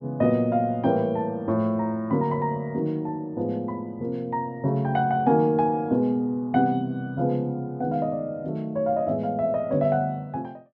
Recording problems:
none

